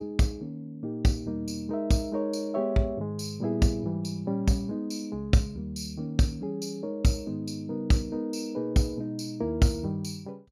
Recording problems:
none

